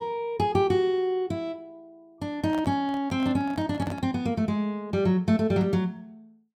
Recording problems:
microphone handling noise; from 2.5 to 4 s; peak -9 dB vs average level

